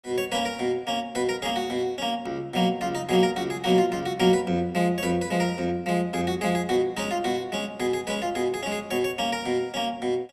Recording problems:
none

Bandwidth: 14.5 kHz